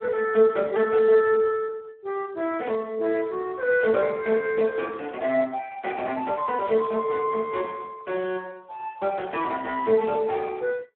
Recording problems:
telephone audio; 280 Hz to 3.1 kHz, Speex

